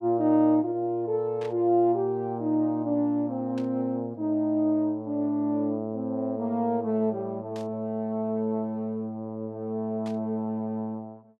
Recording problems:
static burst; 4 times, first at 1.5 s; peak -14 dB vs average level

